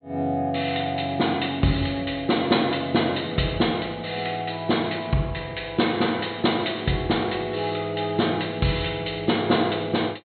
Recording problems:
treble cut off; nothing above 4.2 kHz

